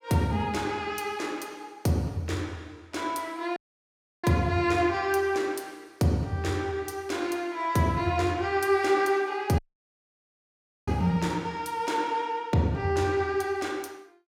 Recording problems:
audio cutting out; at 3.5 s for 0.5 s and at 9.5 s for 1.5 s

